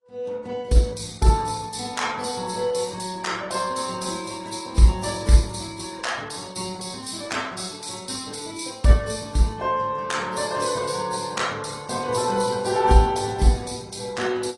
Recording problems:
lossy codec; Opus, then AAC, log-spectral distance 7 dB, nothing above 10.4 kHz

